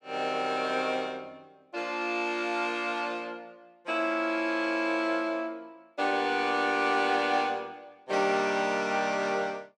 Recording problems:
none

